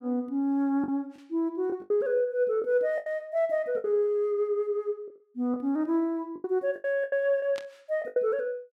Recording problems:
lost packets; 9% of the sound replaced, filled with the last packet
static burst; at 7.5 s; peak -10 dB vs average level

